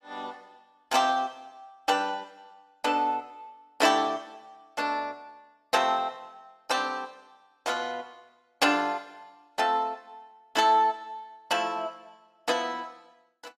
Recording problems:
lossy codec; AAC, log-spectral distance 2 dB, nothing above 14.7 kHz

